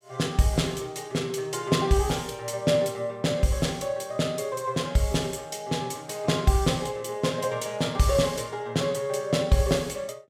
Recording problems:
none

